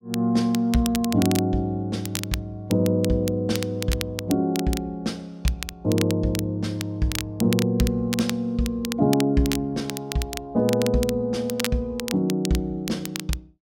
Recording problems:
crackling; vinyl, SNR 10 dB

